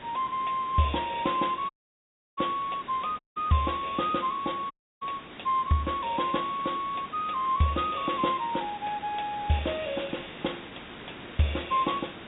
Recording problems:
treble cut off; nothing above 4 kHz
hiss; SNR 14 dB
dropout; at 1.5 s for 0.5 s, at 3 s and at 4.5 s

